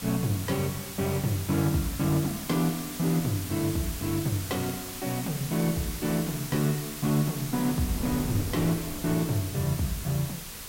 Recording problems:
background hiss; slope +2 dB per octave, SNR 8 dB
wind noise; below 340 Hz, SNR 17 dB
crackling; from 2 to 3 s and from 4.5 to 6.5 s; loose cable, SNR 25 dB

